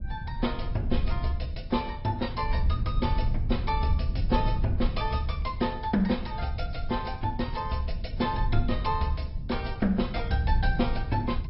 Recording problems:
treble missing; nothing above 5.3 kHz
lossy compression; AAC, log-spectral distance 2 dB
low-frequency rumble; below 88 Hz, SNR 2 dB

